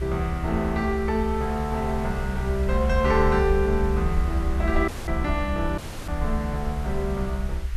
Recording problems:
hiss; SNR 18 dB
rumble; below 66 Hz, SNR 3 dB
dropout; at 5 s and at 6 s

